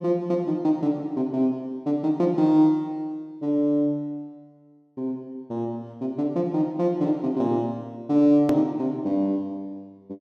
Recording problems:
hard cut with a click; at 8.5 s

